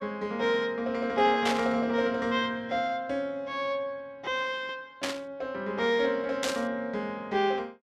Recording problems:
static burst; at 1.5 s, at 5 s and at 6.5 s; peak +3 dB vs average level

